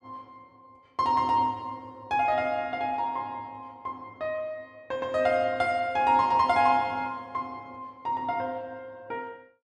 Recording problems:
none

